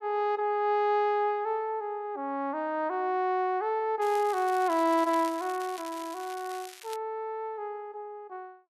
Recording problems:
crackle; from 4 to 7 s; loose cable, SNR 17 dB

